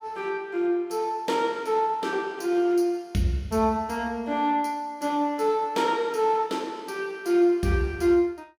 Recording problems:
none

